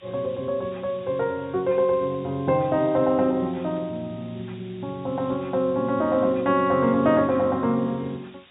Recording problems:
low-pass filter; nothing above 4 kHz
background hiss; SNR 27 dB

